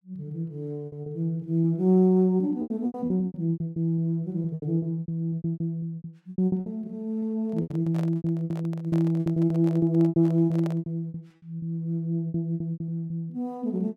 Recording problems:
lost packets; 18% of the sound replaced, filled with repeated pitch periods
microphone handling noise; from 7.5 to 11 s; peak -8 dB vs average level

